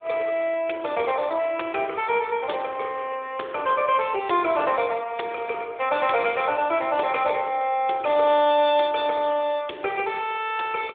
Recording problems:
phone line; 300 Hz to 3.6 kHz, AMR-NB

